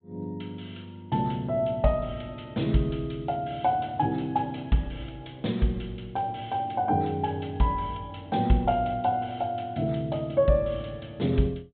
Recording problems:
treble cut off; nothing above 4 kHz

